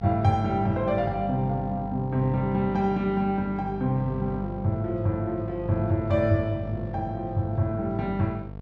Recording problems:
electrical hum; 50 Hz, harmonics up to 950 Hz, SNR 11 dB

